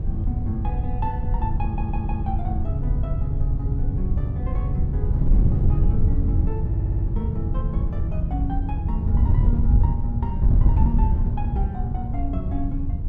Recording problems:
wind noise; below 98 Hz, SNR -8 dB
audio stuttering; at 1.5 s and at 6.5 s

